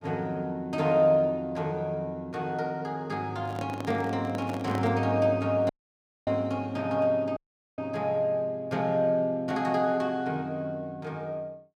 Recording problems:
handling noise; from 3.5 to 5 s; peak -4 dB vs average level
dropout; at 5.5 s for 0.5 s and at 7.5 s

